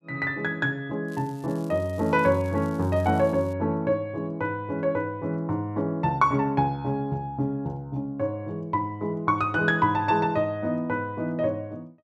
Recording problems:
crackle; from 1 to 3.5 s; loose cable, SNR 27 dB

